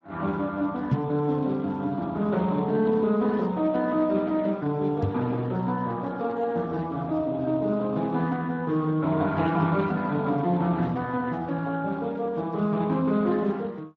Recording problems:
lossy codec; Speex, log-spectral distance 2 dB
microphone bump; at 1 s and at 5 s; peak +4 dB vs average level

